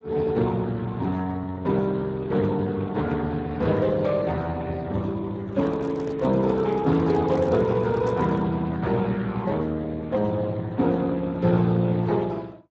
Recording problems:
lossy compression; Speex, log-spectral distance 3 dB
handling noise; from 5.5 to 8.5 s; peak -9 dB vs average level

